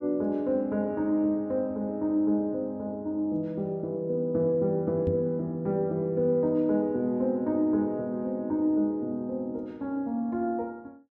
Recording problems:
microphone thump; at 5 s; peak +1 dB vs average level

